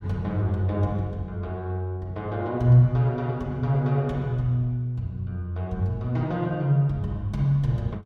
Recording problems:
none

